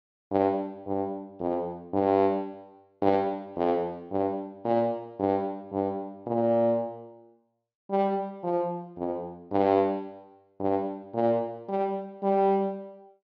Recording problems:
treble missing; nothing above 7.1 kHz

